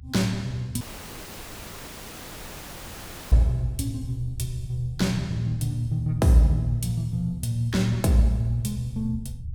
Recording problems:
low-frequency rumble; below 78 Hz, SNR 15 dB
dropout; at 1 s for 2.5 s

